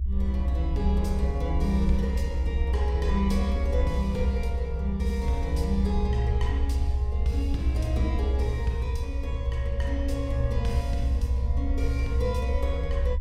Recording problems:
rumble; below 66 Hz, strongest tone 64 Hz, SNR -3 dB

